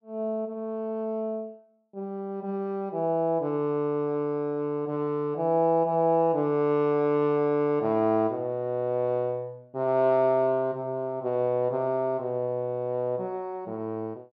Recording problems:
none

